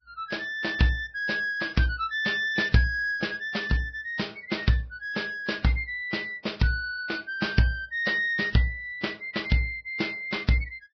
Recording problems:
lossy codec; Vorbis, log-spectral distance 3 dB, nothing above 5.3 kHz

